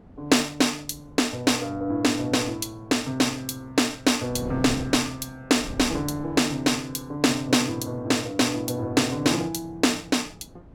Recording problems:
wind noise; below 320 Hz, SNR 19 dB

